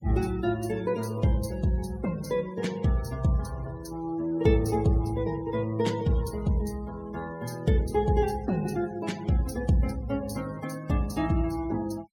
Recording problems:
noise reduction artefacts; signal-to-artefact ratio 19 dB

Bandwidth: 17 kHz